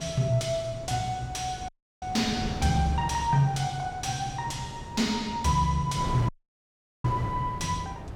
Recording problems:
distortion; soft clipping, signal-to-distortion ratio 11 dB
wind noise; below 350 Hz, SNR 10 dB
audio cutting out; at 1.5 s and at 6.5 s for 1 s

